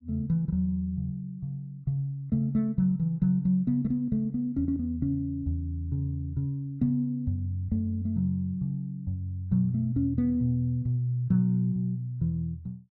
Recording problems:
none

